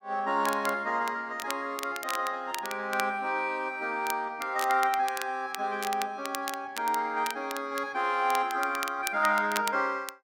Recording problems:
crackling; vinyl, SNR 11 dB

